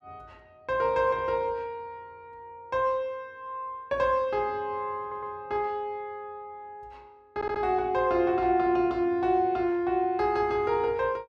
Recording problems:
audio stuttering; at 5 s and at 7.5 s

